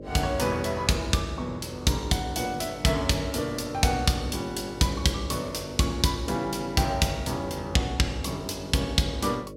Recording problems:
hum; 50 Hz, harmonics up to 600 Hz, SNR 14 dB

